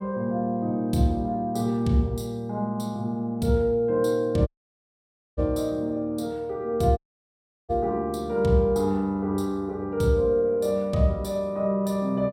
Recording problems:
dropout; at 4.5 s for 1 s and at 7 s for 0.5 s

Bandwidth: 16 kHz